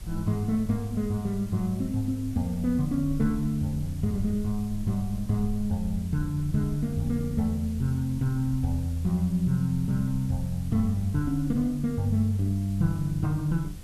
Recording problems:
hiss; slope -1 dB per octave, SNR 23 dB
rumble; below 60 Hz, SNR 15 dB

